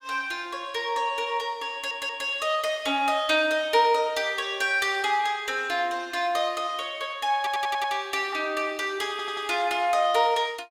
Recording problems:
audio stuttering; at 1.5 s, at 7.5 s and at 9 s

